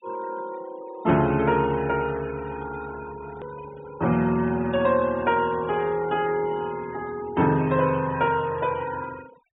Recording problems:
low-pass filter; nothing above 4 kHz
denoising artefacts; signal-to-artefact ratio 20 dB
hard cut with a click; at 3.5 s

